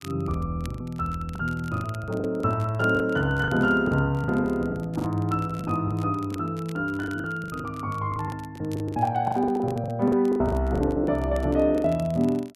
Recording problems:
crackle; vinyl, SNR 25 dB
lost packets; 15% of the sound replaced, filled with the last packet

